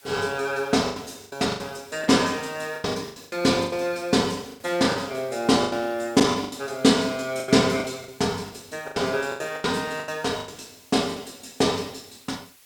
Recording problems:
background hiss; slope +2 dB per octave, SNR 26 dB
lost packets; 14% of the sound replaced, filled with the last packet

